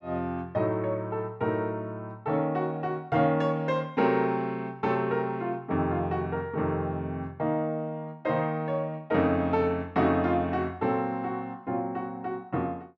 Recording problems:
none

